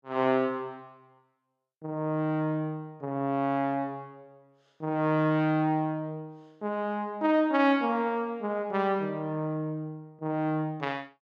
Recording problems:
none

